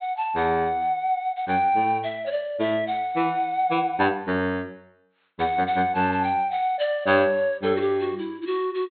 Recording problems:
treble missing; nothing above 4.2 kHz

